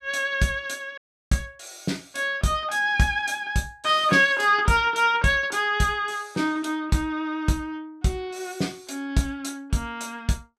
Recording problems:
audio cutting out; at 1 s

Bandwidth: 14.5 kHz